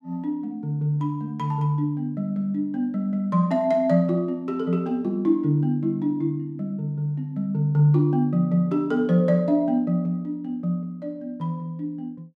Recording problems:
none

